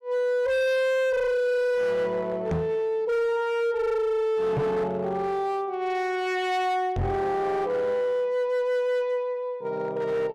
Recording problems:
distorted audio; hard clipping, signal-to-distortion ratio 7 dB
microphone bump; at 2.5 s, at 4.5 s and at 7 s; peak +3 dB vs average level

